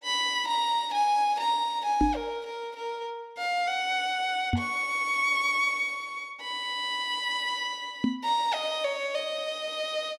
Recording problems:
microphone thump; at 2 s, at 4.5 s and at 8 s; peak +5 dB vs average level

